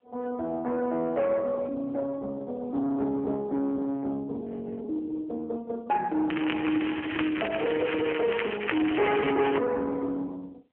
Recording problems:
phone line; 280 Hz to 2.1 kHz, AMR-NB
distortion; soft clipping, signal-to-distortion ratio 12 dB
frozen audio; at 4.5 s
crackling; from 6.5 to 9.5 s; loose cable, SNR 7 dB

